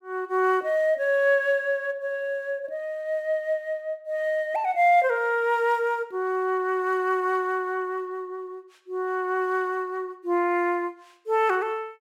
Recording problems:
none

